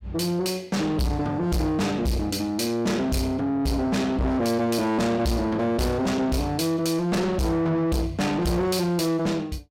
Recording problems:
distorted audio; soft clipping, signal-to-distortion ratio 7 dB

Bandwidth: 16 kHz